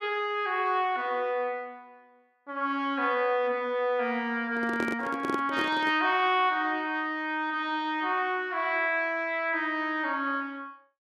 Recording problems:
handling noise; from 4.5 to 6 s; peak 0 dB vs average level

